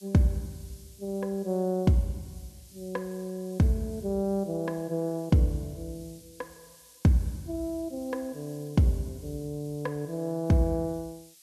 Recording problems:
hiss; SNR 23 dB

